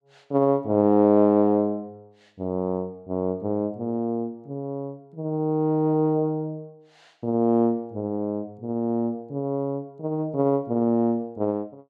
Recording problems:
none

